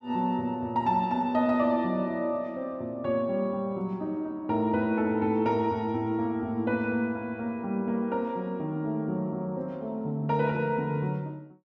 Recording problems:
none

